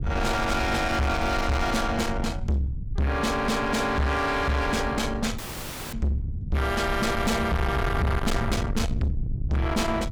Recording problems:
distorted audio; soft clipping, signal-to-distortion ratio 7 dB
rumble; below 220 Hz, SNR 6 dB
dropout; at 5.5 s for 0.5 s

